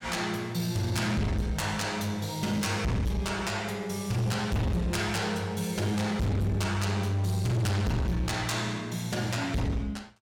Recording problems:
distortion; soft clipping, signal-to-distortion ratio 6 dB

